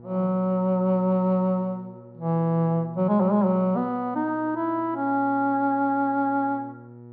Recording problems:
treble missing; nothing above 4.8 kHz
hum; 60 Hz, harmonics up to 960 Hz, SNR 21 dB

